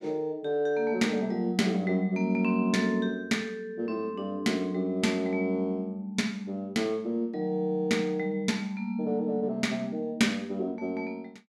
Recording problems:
none

